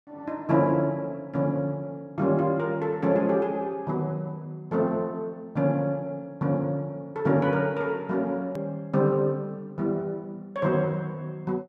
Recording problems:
hard cut with a click; at 8.5 s

